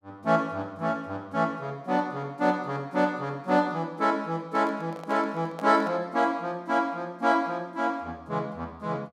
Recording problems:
handling noise; from 4.5 to 6 s; peak -8 dB vs average level

